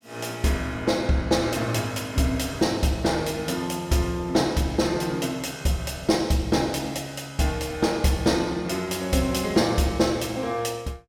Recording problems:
none

